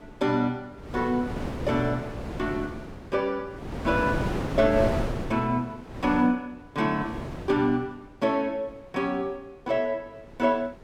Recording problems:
wind noise; below 540 Hz, SNR 6 dB

